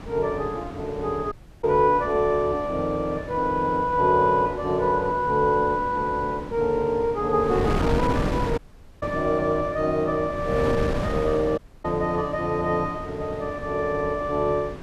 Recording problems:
wind noise; below 480 Hz, SNR 9 dB
dropout; at 1.5 s, at 8.5 s and at 12 s

